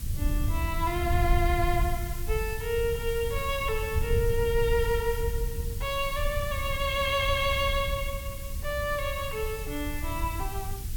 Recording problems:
background hiss; slope +3 dB per octave, SNR 12 dB
wind on the microphone; below 86 Hz, SNR 3 dB

